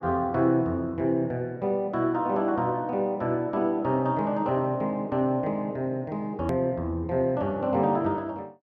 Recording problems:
click at an edit; at 6.5 s

